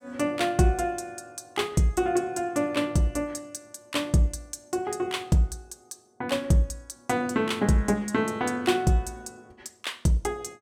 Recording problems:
none

